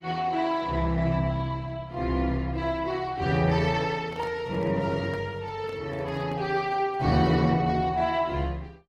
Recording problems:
lossy codec; Opus, log-spectral distance 3 dB
handling noise; from 4 to 7.5 s; peak -10 dB vs average level

